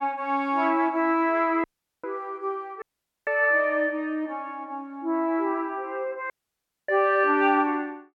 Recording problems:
audio cutting out; at 1.5 s, at 3 s and at 6.5 s for 0.5 s

